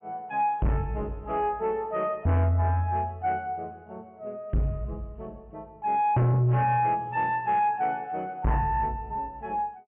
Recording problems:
treble cut off; nothing above 3 kHz
distorted audio; soft clipping, signal-to-distortion ratio 7 dB

